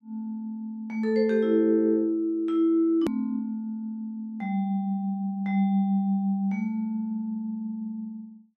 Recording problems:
hard cut with a click; at 3 s

